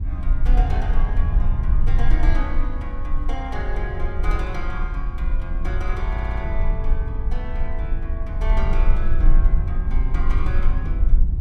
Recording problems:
low-frequency rumble; below 48 Hz, strongest tone 18 Hz, SNR -9 dB
audio stuttering; at 6 s

